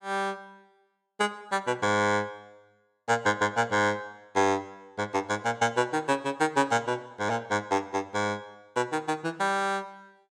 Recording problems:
none

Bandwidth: 17 kHz